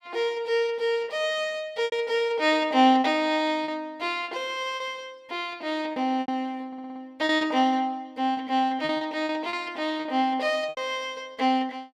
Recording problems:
lost packets; 7% of the sound replaced, filled with repeated pitch periods
audio stuttering; at 6.5 s

